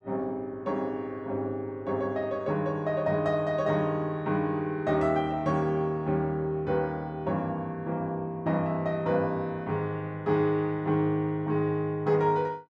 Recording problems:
none

